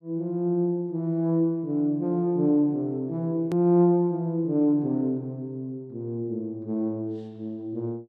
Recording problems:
click at an edit; at 3.5 s

